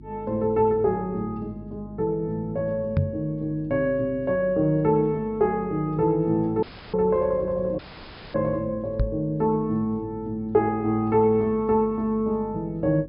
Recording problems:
treble cut off; nothing above 5.5 kHz
hum; 50 Hz, harmonics up to 350 Hz, SNR 19 dB
knock on the microphone; at 3 s and at 9 s; peak +6 dB vs average level
audio cutting out; at 6.5 s and at 8 s for 0.5 s

